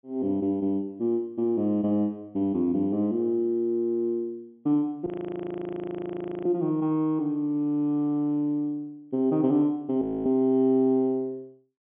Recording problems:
treble cut off; nothing above 3.4 kHz
audio freezing; at 5 s for 1.5 s and at 10 s

